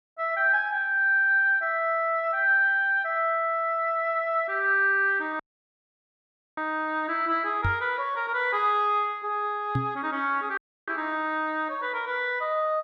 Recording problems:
dropout; at 5.5 s for 1 s and at 11 s
microphone bump; at 7.5 s and at 10 s; peak +1 dB vs average level

